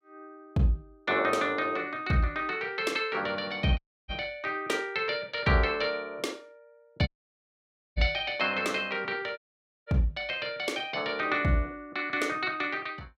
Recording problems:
dropout; at 4 s, at 7 s for 1 s and at 9.5 s

